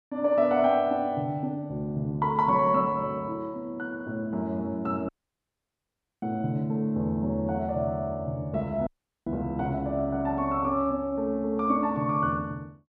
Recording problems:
dropout; at 5 s for 1 s and at 9 s

